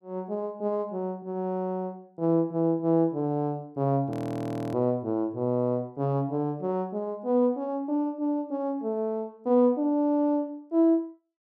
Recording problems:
frozen audio; at 4 s for 0.5 s

